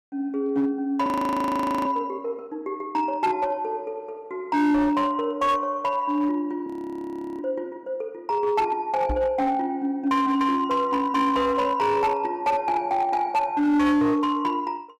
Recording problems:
distortion; hard clipping, uneven, signal-to-distortion ratio 11 dB
frozen audio; at 1 s for 1 s and at 6.5 s for 0.5 s
microphone thump; at 9 s; peak -1 dB vs average level

